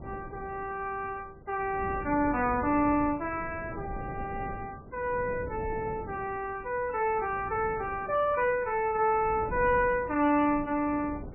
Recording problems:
lossy codec; MP3, log-spectral distance 2 dB, nothing above 2.4 kHz
wind on the microphone; below 350 Hz, SNR 14 dB

